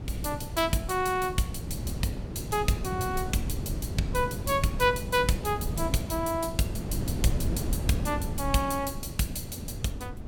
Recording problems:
wind on the microphone; below 200 Hz, SNR 5 dB

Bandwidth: 17 kHz